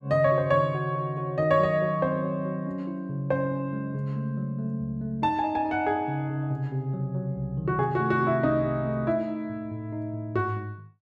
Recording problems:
none

